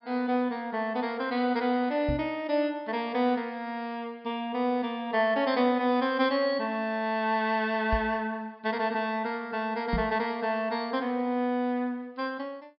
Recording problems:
treble missing; nothing above 5.3 kHz
microphone thump; at 2 s, at 8 s and at 10 s; peak +2 dB vs average level

